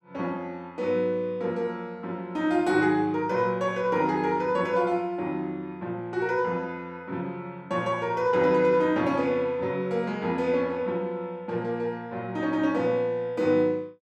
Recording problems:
none

